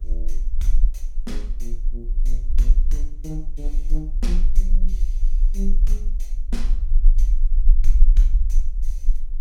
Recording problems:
background hiss; SNR 28 dB
low-frequency rumble; below 36 Hz, strongest tone 18 Hz, SNR -13 dB

